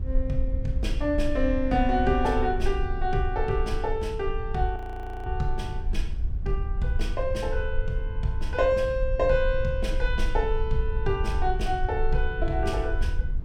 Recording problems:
rumble; below 56 Hz, strongest tone 20 Hz, SNR 3 dB
audio freezing; at 5 s for 0.5 s

